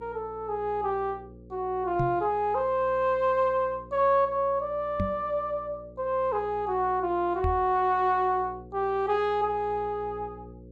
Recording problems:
hum; 60 Hz, harmonics up to 540 Hz, SNR 21 dB
microphone thump; at 2 s, at 5 s and at 7.5 s; peak 0 dB vs average level

